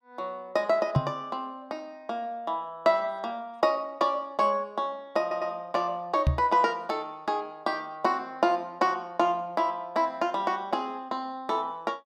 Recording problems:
microphone thump; at 1 s and at 6.5 s; peak +8 dB vs average level
audio stuttering; at 5 s

